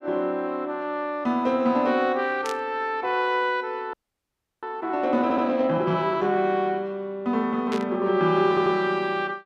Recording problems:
burst of static; at 2.5 s and at 7.5 s; peak -7 dB vs average level
frozen audio; at 4 s for 0.5 s
stutter; at 5 s and at 8.5 s

